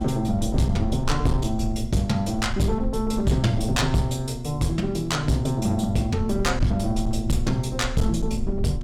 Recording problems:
distorted audio; hard clipping, uneven, signal-to-distortion ratio 10 dB
electrical hum; 60 Hz, harmonics up to 720 Hz, SNR 11 dB
low-frequency rumble; below 60 Hz, SNR 9 dB

